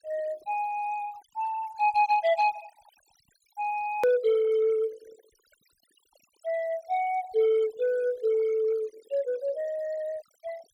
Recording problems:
noise reduction artefacts; signal-to-artefact ratio 21 dB
click at an edit; at 4 s

